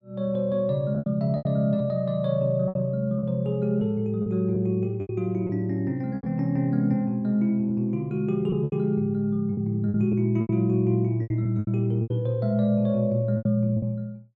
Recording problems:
packet loss; 9% of the sound replaced, filled with repeated pitch periods

